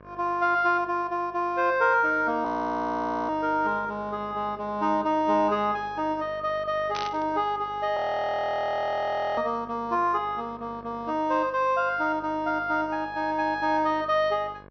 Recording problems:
treble cut off; nothing above 6.1 kHz
hum; 50 Hz, harmonics up to 1.9 kHz, SNR 23 dB
audio freezing; at 2.5 s for 1 s and at 8 s for 1.5 s
burst of static; at 7 s; peak -4 dB vs average level

